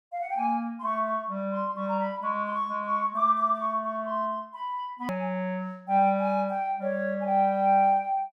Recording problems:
edit click; at 5 s

